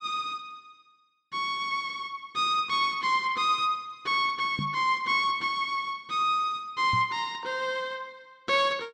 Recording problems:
microphone thump; at 4.5 s and at 7 s; peak -2 dB vs average level

